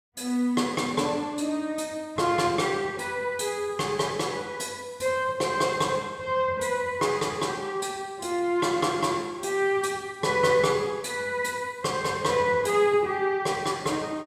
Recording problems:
none

